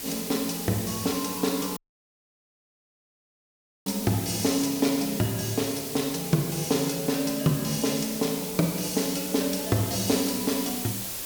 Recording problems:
hiss; SNR 6 dB
audio cutting out; at 2 s for 2 s

